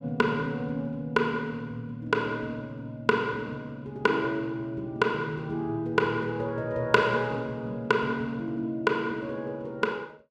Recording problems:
none

